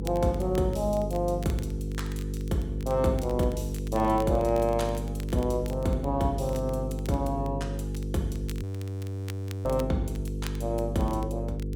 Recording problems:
hum; 50 Hz, harmonics up to 500 Hz, SNR 4 dB
crackling; vinyl, SNR 21 dB
frozen audio; at 8.5 s for 1 s

